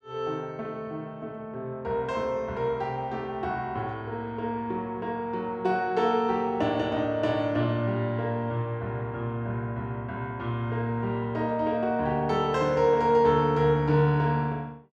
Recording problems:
none

